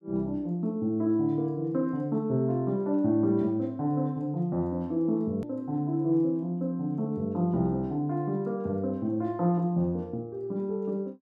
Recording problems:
hard cut with a click; at 5.5 s

